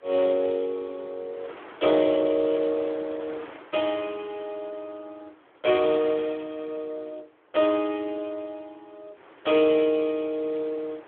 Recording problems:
phone line; 260 Hz to 3.7 kHz, Speex
wind noise; below 1.7 kHz, SNR 22 dB

